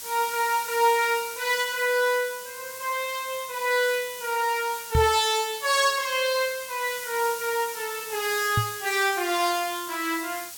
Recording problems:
background hiss; slope +2 dB per octave, SNR 11 dB
knock on the microphone; at 5 s and at 8.5 s; peak +4 dB vs average level

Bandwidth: 17 kHz